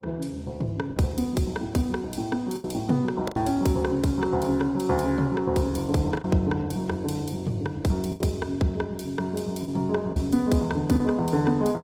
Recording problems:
lossy compression; Opus, log-spectral distance 3 dB, nothing above 20.1 kHz
packet loss; 4% of the sound replaced, filled with the last packet

